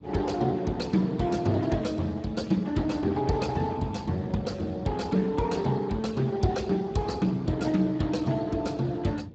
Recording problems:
lossy compression; Speex, log-spectral distance 4 dB, nothing above 7.6 kHz
low-frequency rumble; below 260 Hz, SNR 18 dB

